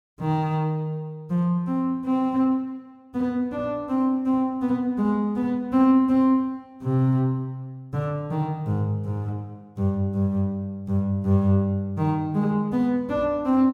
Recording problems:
none

